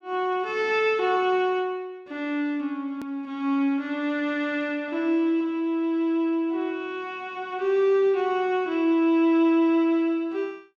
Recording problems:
edit click; at 3 s

